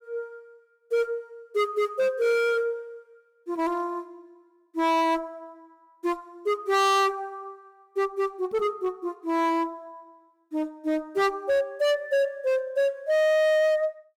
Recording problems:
distorted audio; hard clipping, signal-to-distortion ratio 6 dB

